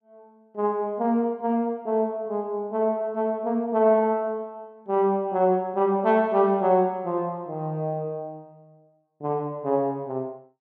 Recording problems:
none

